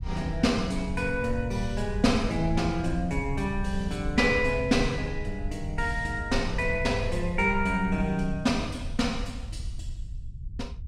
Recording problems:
low-frequency rumble; below 82 Hz, SNR 9 dB

